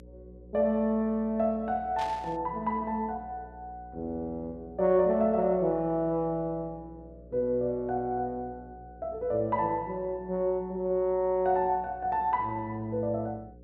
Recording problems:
mains hum; 60 Hz, harmonics up to 540 Hz, SNR 21 dB
burst of static; at 2 s; peak -8 dB vs average level

